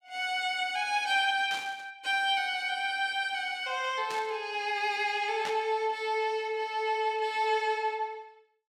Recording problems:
static burst; at 1.5 s, at 4 s and at 5.5 s; peak -5 dB vs average level

